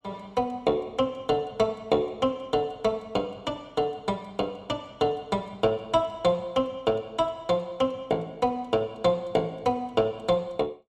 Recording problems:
none

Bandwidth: 14.5 kHz